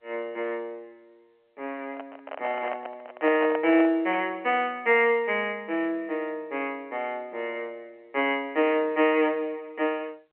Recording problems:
phone line; 260 Hz to 3.1 kHz, G.711
handling noise; from 2 to 4 s; peak -2 dB vs average level

